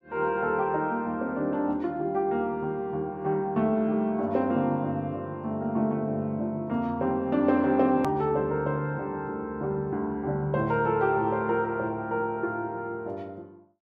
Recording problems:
click at an edit; at 8 s

